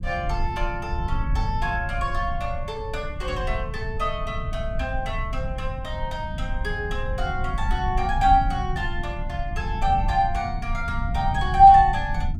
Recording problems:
low-frequency rumble; below 90 Hz, SNR 6 dB

